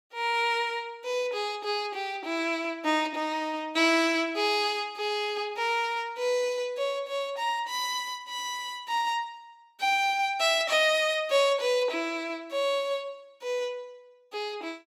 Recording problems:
none

